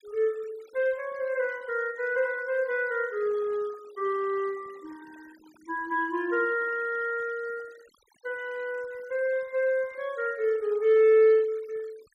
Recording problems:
noise reduction artefacts; signal-to-artefact ratio 27 dB

